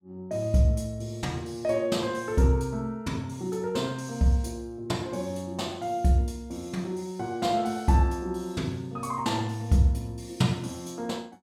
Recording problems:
none

